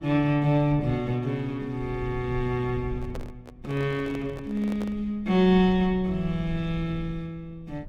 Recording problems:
rumble; below 110 Hz, SNR 15 dB
microphone handling noise; from 3 to 5 s; peak -8 dB vs average level

